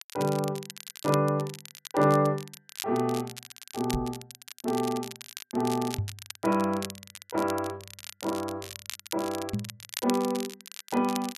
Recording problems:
crackling; vinyl, SNR 12 dB
microphone thump; at 4 s, at 6 s and at 9.5 s; peak +2 dB vs average level

